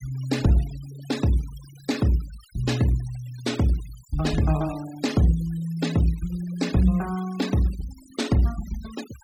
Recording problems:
denoising artefacts; signal-to-artefact ratio 17 dB

